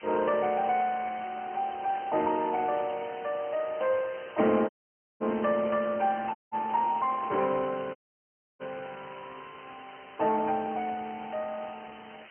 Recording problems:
phone line; 170 Hz to 3.1 kHz, Speex
hiss; SNR 19 dB
burst of static; at 2 s, at 4.5 s and at 6.5 s; peak -12 dB vs average level
dropout; at 4.5 s for 0.5 s, at 6.5 s and at 8 s for 0.5 s

